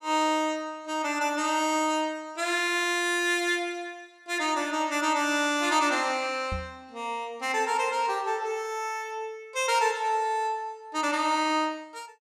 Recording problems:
knock on the microphone; at 6.5 s; peak -4 dB vs average level

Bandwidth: 14.5 kHz